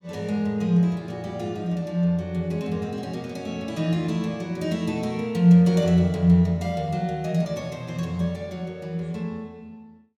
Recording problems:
none

